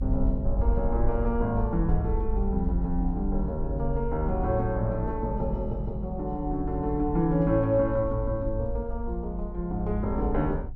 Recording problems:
low-frequency rumble; below 56 Hz, SNR 4 dB

